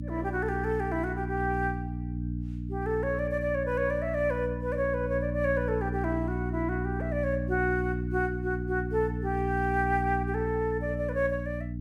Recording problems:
electrical hum; 60 Hz, harmonics up to 300 Hz, SNR 3 dB

